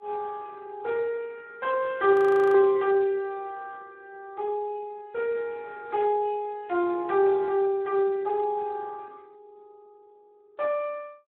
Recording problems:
phone line; 260 Hz to 2.8 kHz, Speex
frozen audio; at 2 s
burst of static; at 3 s and at 6 s; peak -16 dB vs average level

